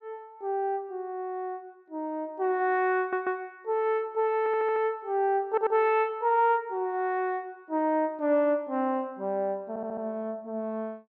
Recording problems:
stutter; 4 times, first at 3 s

